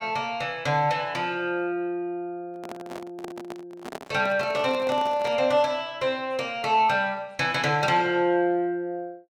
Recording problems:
microphone handling noise; from 2.5 to 5.5 s; peak -7 dB vs average level

